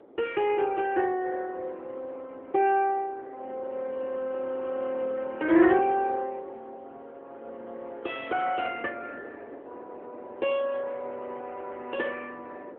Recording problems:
phone line; 280 Hz to 3.3 kHz, AMR-NB
wind on the microphone; below 620 Hz, SNR 21 dB

